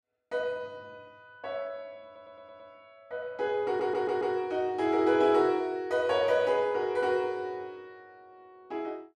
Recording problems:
stutter; at 2 s and at 3.5 s

